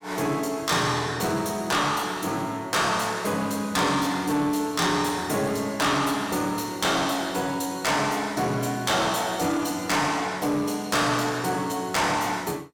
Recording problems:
distortion; soft clipping, signal-to-distortion ratio 10 dB

